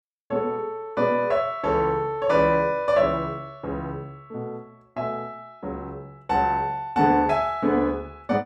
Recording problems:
none

